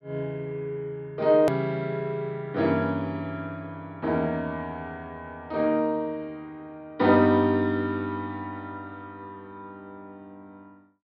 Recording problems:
treble cut off; nothing above 5.5 kHz
click at an edit; at 1.5 s

